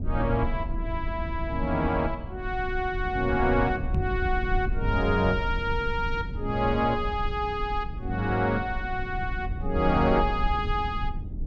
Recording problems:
low-frequency rumble; below 82 Hz, SNR 6 dB
microphone bump; at 4 s; peak +1 dB vs average level

